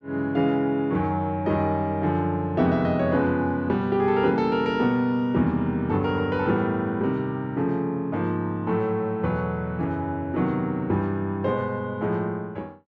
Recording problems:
none

